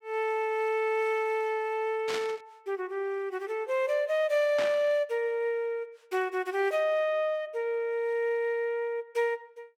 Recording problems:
static burst; at 2 s and at 4.5 s; peak -2 dB vs average level

